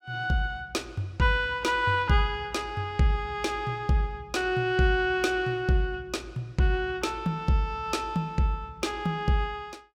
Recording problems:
none

